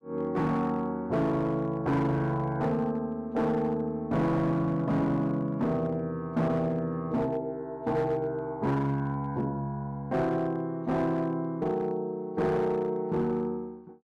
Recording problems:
distortion; hard clipping, signal-to-distortion ratio 12 dB

